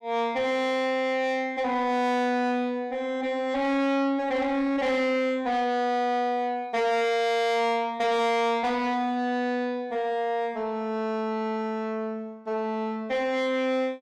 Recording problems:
distortion; soft clipping, signal-to-distortion ratio 8 dB

